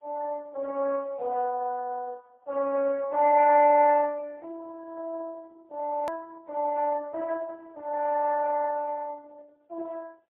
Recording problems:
telephone audio; 340 Hz to 2.9 kHz, AMR-NB, then MP3
hard cut with a click; at 6 s

